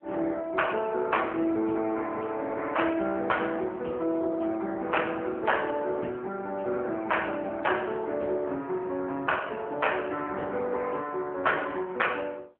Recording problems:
telephone audio; 240 Hz to 3.1 kHz, AMR-NB

